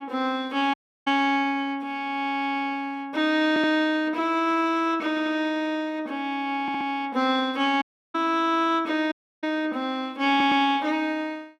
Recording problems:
audio cutting out; at 0.5 s, at 8 s and at 9 s
stutter; 4 times, first at 3.5 s

